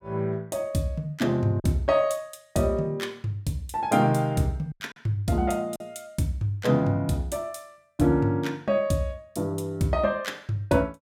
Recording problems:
packet loss; 1.8% of the sound replaced, filled with silence

